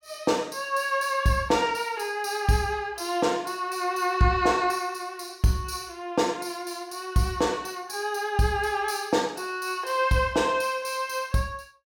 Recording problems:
none

